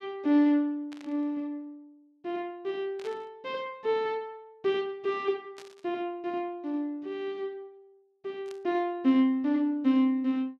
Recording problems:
burst of static; 4 times, first at 1 s; peak -14 dB vs average level

